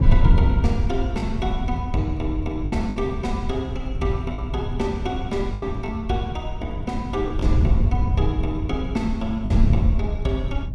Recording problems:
wind noise; below 100 Hz, SNR -2 dB
packet loss; 3% of the sound replaced, filled with the last packet

